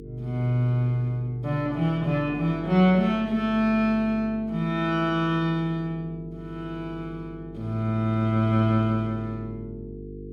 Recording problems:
hum; 50 Hz, harmonics up to 450 Hz, SNR 16 dB

